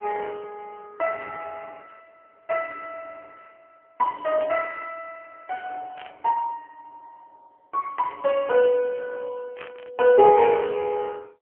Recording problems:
phone line; 150 Hz to 2.8 kHz, AMR-NB
burst of static; 4 times, first at 4.5 s; peak -11 dB vs average level

